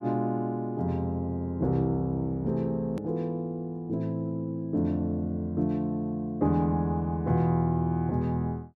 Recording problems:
hard cut with a click; at 3 s

